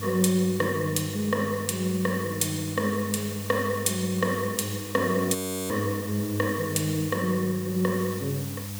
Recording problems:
hum; 50 Hz, harmonics up to 500 Hz, SNR 10 dB
hiss; slope +1 dB per octave, SNR 12 dB
frozen audio; at 5.5 s

